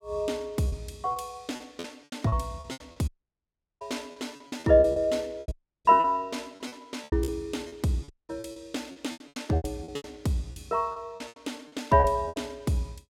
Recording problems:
lost packets; 16% of the sound replaced, filled with repeated pitch periods
dropout; at 3 s for 0.5 s, at 5.5 s and at 8 s

